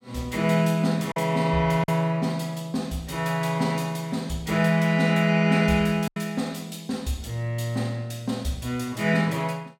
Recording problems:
lost packets; 1.7% of the sound replaced, filled with silence

